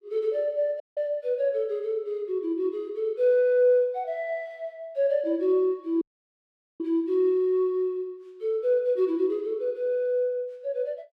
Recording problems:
dropout; at 1 s and at 6 s for 1 s

